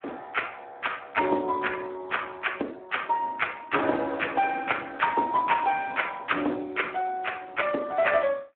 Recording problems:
phone line; 220 Hz to 3.6 kHz, Speex

